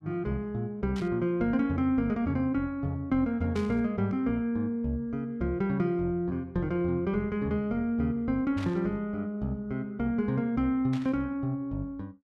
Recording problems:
static burst; 4 times, first at 1 s; peak -10 dB vs average level

